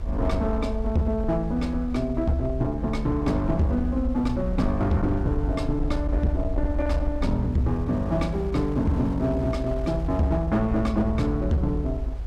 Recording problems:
distorted audio; hard clipping, uneven, signal-to-distortion ratio 10 dB
low-frequency rumble; below 68 Hz, SNR 5 dB
wind on the microphone; below 640 Hz, SNR 18 dB

